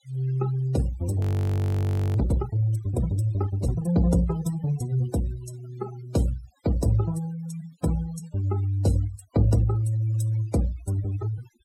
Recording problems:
denoising artefacts; signal-to-artefact ratio 18 dB
frozen audio; at 1 s for 1 s

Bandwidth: 16 kHz